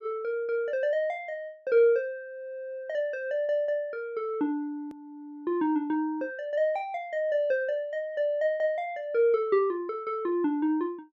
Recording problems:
hard cut with a click; at 5 s

